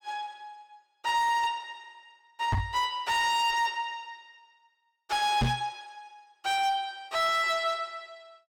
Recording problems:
distortion; hard clipping, signal-to-distortion ratio 10 dB
knock on the microphone; at 2.5 s and at 5.5 s; peak +4 dB vs average level

